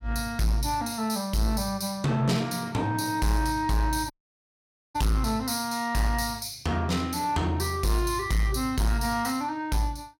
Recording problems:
distortion; soft clipping, signal-to-distortion ratio 11 dB
audio cutting out; at 4 s for 1 s

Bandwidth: 16.5 kHz